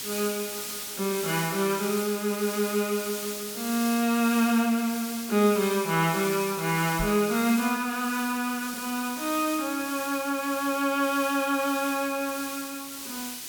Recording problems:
background hiss; SNR 8 dB
knock on the microphone; at 7 s; peak -4 dB vs average level

